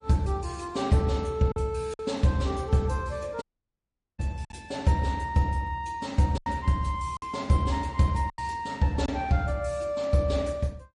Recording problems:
lossy compression; MP3, log-spectral distance 2 dB, nothing above 10.1 kHz
packet loss; 4% of the sound replaced, filled with silence
dropout; at 3.5 s for 1 s

